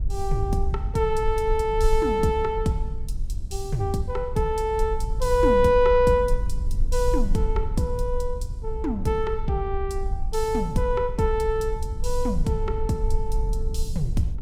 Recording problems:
rumble; below 54 Hz, SNR 5 dB

